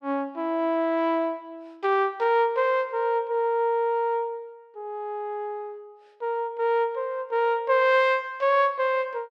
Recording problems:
none

